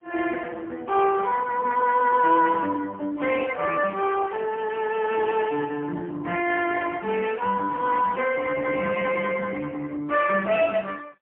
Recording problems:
telephone audio; 240 Hz to 3 kHz, AMR-NB, then MP3

